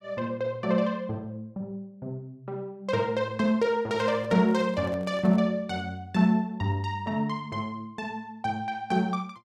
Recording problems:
microphone handling noise; from 4 to 5.5 s; peak -11 dB vs average level

